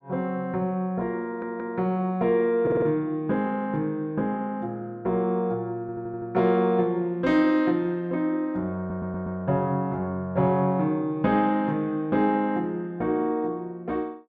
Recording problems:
stutter; 4 times, first at 1.5 s

